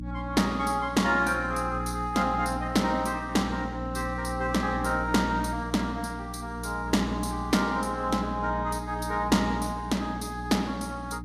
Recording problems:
lossy compression; Vorbis, log-spectral distance 3 dB, nothing above 12.7 kHz
hum; 60 Hz, harmonics up to 300 Hz, SNR 9 dB

